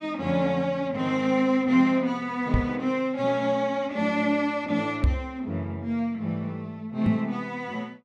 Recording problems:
microphone thump; at 2.5 s, at 5 s and at 7 s; peak +7 dB vs average level

